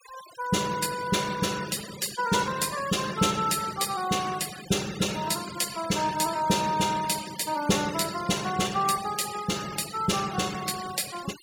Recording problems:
noise reduction artefacts; signal-to-artefact ratio 13 dB

